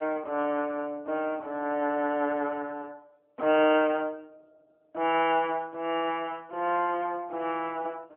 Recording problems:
telephone audio; 190 Hz to 3.6 kHz, AMR-NB

